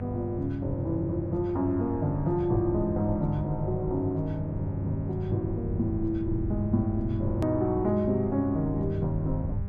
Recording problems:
hum; 50 Hz, harmonics up to 800 Hz, SNR 7 dB
rumble; below 100 Hz, SNR 11 dB
edit click; at 7.5 s

